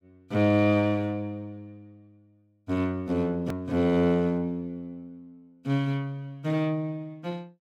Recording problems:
click at an edit; at 3.5 s

